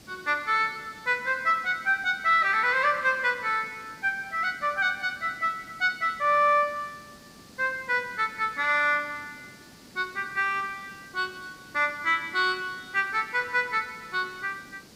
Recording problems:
background hiss; SNR 23 dB

